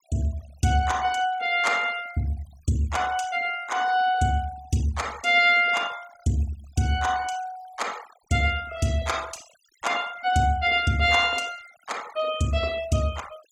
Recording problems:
denoising artefacts; signal-to-artefact ratio 21 dB

